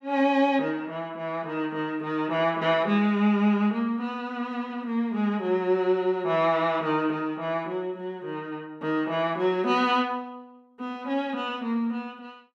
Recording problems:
none

